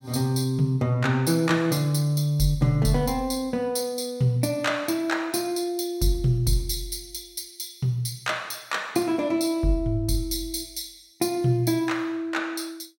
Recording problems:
none

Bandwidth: 17 kHz